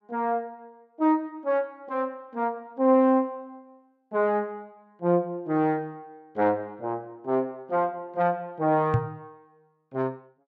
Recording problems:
microphone thump; at 9 s; peak +6 dB vs average level

